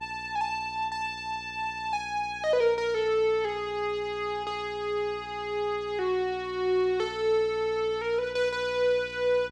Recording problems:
hum; 60 Hz, harmonics up to 1.4 kHz, SNR 22 dB

